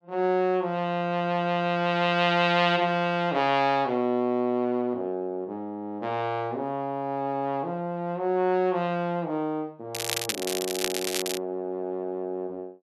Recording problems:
crackle; from 10 to 11 s; loose cable, SNR 4 dB

